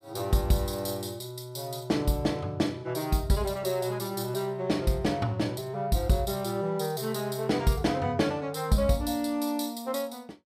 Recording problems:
none

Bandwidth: 15.5 kHz